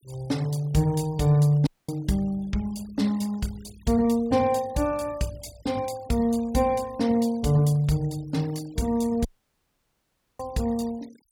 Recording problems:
noise reduction artefacts; signal-to-artefact ratio 23 dB
dropout; at 1.5 s and at 9.5 s for 1 s

